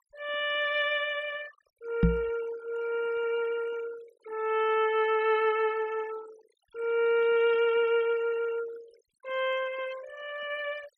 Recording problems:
denoising artefacts; signal-to-artefact ratio 18 dB
knock on the microphone; at 2 s; peak +8 dB vs average level

